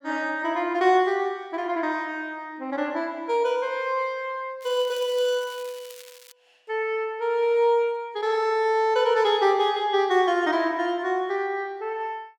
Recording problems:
crackling; from 4.5 to 6.5 s; loose cable, SNR 21 dB

